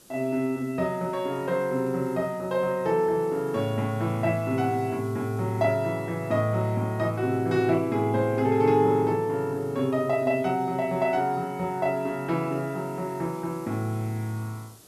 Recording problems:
hiss; SNR 26 dB

